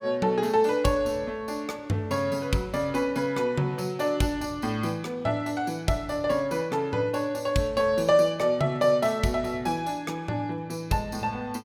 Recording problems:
none

